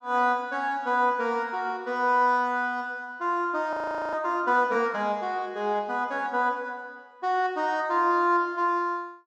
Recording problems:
audio freezing; at 3.5 s

